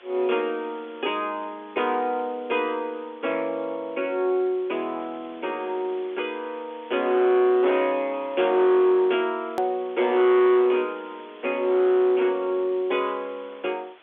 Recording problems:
telephone audio; 260 Hz to 3.5 kHz, G.711
distorted audio; hard clipping, uneven, signal-to-distortion ratio 11 dB
background hiss; SNR 25 dB
edit click; at 9.5 s

